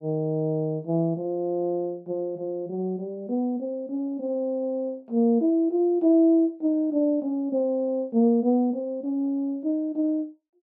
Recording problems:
none

